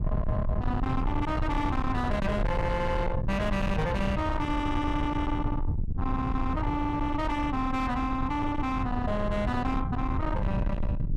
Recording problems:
distortion; soft clipping, signal-to-distortion ratio 7 dB
rumble; below 190 Hz, SNR 2 dB

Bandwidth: 14.5 kHz